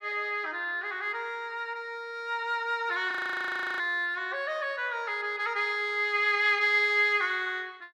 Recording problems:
frozen audio; at 3 s for 0.5 s

